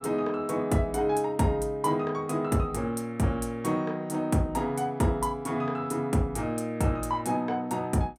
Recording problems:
none

